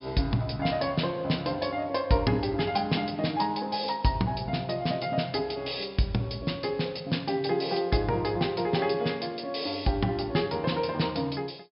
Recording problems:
low-pass filter; nothing above 5.3 kHz

